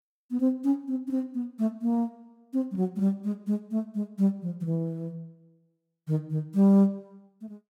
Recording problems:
none

